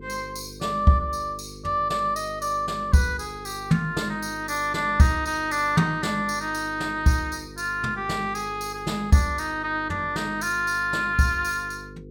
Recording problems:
mains hum; 50 Hz, harmonics up to 500 Hz, SNR 18 dB

